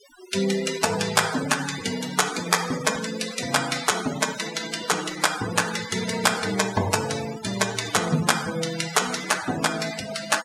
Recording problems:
denoising artefacts; signal-to-artefact ratio 10 dB

